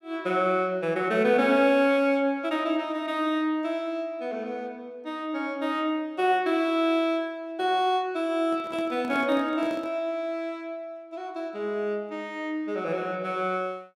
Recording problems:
handling noise; from 8.5 to 10 s; peak -9 dB vs average level

